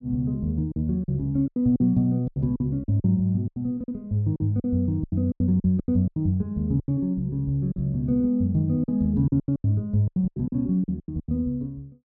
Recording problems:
lost packets; 14% of the sound replaced, filled with silence

